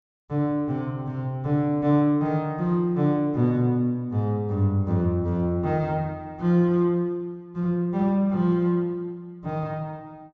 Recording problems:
treble missing; nothing above 7.6 kHz

